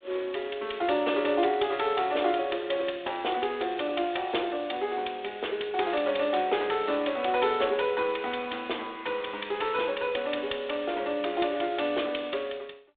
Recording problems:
phone line; 280 Hz to 3.6 kHz, G.726

